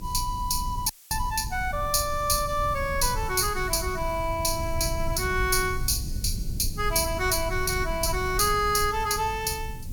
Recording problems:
background hiss; slope +3 dB per octave, SNR 22 dB
low-frequency rumble; below 94 Hz, SNR 9 dB
frozen audio; at 1 s

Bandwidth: 17.5 kHz